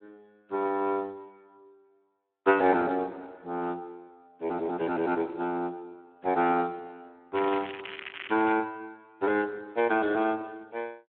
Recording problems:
phone line; 260 Hz to 3.3 kHz, Speex
crackling; from 7.5 to 8.5 s; loose cable, SNR 10 dB

